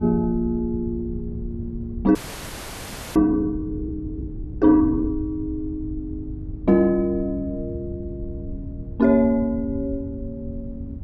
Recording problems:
wind noise; below 120 Hz, SNR 12 dB
audio freezing; at 2 s for 1 s

